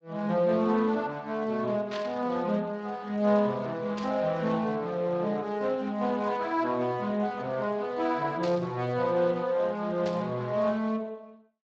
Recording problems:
lossy codec; Speex, log-spectral distance 3 dB
static burst; 4 times, first at 2 s; peak -6 dB vs average level

